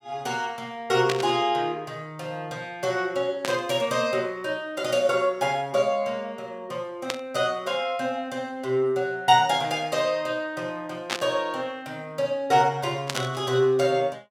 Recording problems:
burst of static; 5 times, first at 1 s; peak +3 dB vs average level

